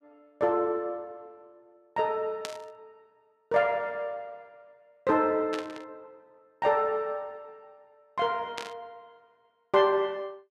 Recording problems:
static burst; at 2.5 s, at 5.5 s and at 8.5 s; peak -4 dB vs average level

